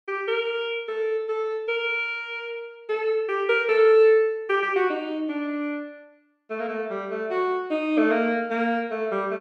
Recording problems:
none

